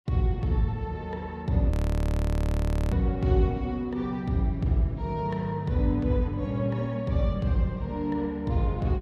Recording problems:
frozen audio; at 1.5 s for 1 s

